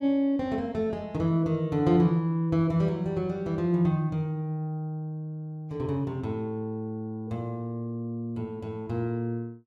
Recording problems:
none

